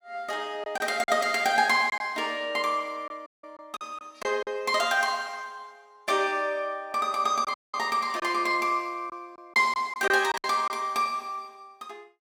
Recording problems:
packet loss; 5% of the sound replaced, filled with silence
audio cutting out; at 3.5 s and at 7.5 s

